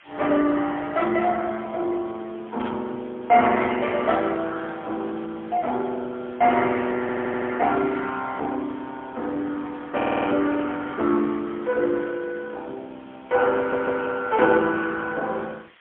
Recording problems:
phone line; 220 Hz to 3.4 kHz, AMR-NB, then MP3
hiss; SNR 27 dB
burst of static; at 2.5 s; peak -8 dB vs average level
stutter; at 7 s, at 10 s and at 14 s

